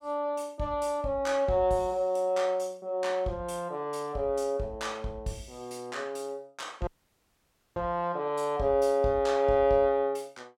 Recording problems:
dropout; at 7 s for 1 s

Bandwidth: 16.5 kHz